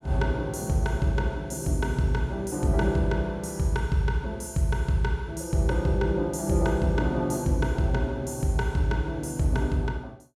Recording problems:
none

